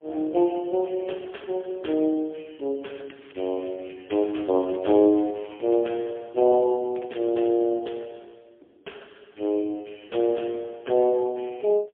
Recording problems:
phone line; 260 Hz to 3.4 kHz, AMR-NB, then MP3
crackle; at 3 s, from 4 to 6 s and at 7 s; loose cable, SNR 27 dB

